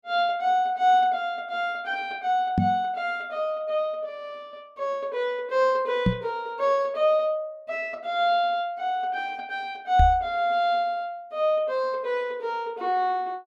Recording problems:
microphone thump; at 2.5 s, at 6 s and at 10 s; peak +7 dB vs average level

